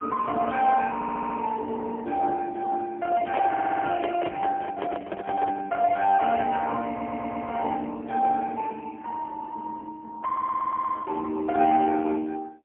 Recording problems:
telephone audio; 280 Hz to 2.1 kHz, AMR-NB, then MP3
stutter; 4 times, first at 1 s
handling noise; from 3.5 to 6 s; peak 0 dB vs average level

